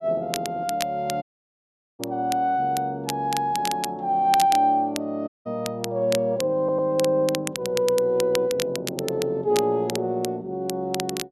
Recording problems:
crackling; vinyl, SNR 10 dB
audio cutting out; at 1 s for 1 s and at 5.5 s
audio stuttering; at 6.5 s

